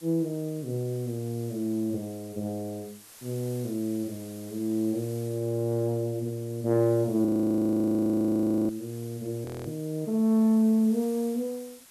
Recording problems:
hiss; slope 0 dB per octave, SNR 21 dB
audio freezing; at 7.5 s for 1.5 s and at 9.5 s

